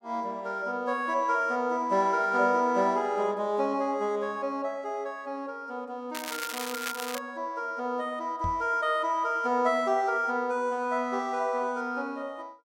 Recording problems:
crackle; from 6 to 7 s; loose cable, SNR 8 dB
microphone bump; at 8.5 s; peak -3 dB vs average level

